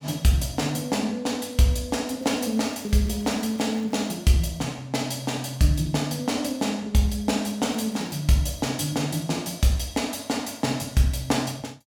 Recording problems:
crackle; from 2 to 4 s and at 7.5 s; loose cable, SNR 25 dB

